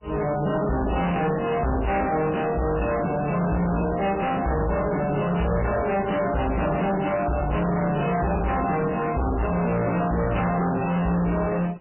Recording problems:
codec artefacts; MP3, log-spectral distance 8 dB, nothing above 2.9 kHz
distorted audio; hard clipping, uneven, signal-to-distortion ratio 5 dB
crackle; at 1 s, at 4 s and from 5.5 to 7.5 s; loose cable, SNR 17 dB

